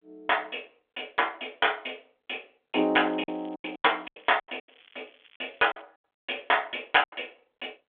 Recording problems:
telephone audio; 260 Hz to 3.5 kHz, G.726
packet loss; 11% of the sound replaced, filled with silence
crackle; from 3 to 6 s; loose cable, SNR 29 dB

